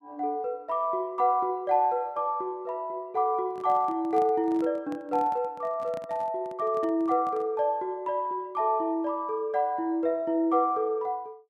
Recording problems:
handling noise; from 3.5 to 7.5 s; peak -12 dB vs average level

